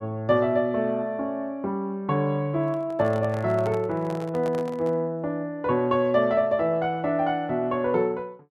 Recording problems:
handling noise; from 2.5 to 5 s; peak -8 dB vs average level

